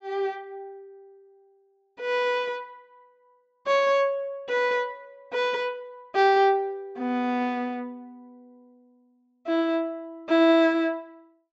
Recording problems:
treble missing; nothing above 8 kHz

